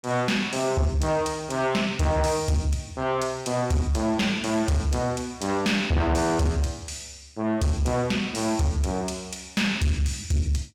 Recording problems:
distorted audio; soft clipping, signal-to-distortion ratio 10 dB

